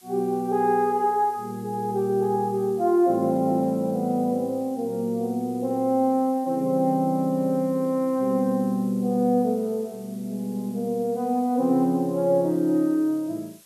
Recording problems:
hiss; slope +1 dB per octave, SNR 27 dB

